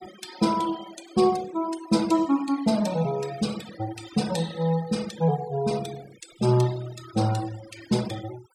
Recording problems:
denoising artefacts; signal-to-artefact ratio 16 dB

